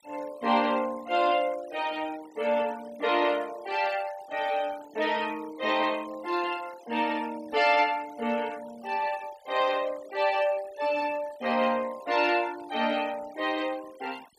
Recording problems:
denoising artefacts; signal-to-artefact ratio 20 dB

